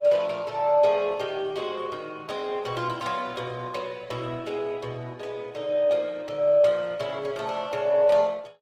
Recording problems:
codec artefacts; Opus, log-spectral distance 3 dB

